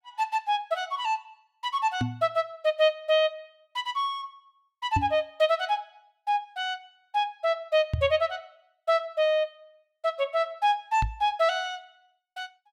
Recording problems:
microphone bump; 4 times, first at 2 s; peak +3 dB vs average level

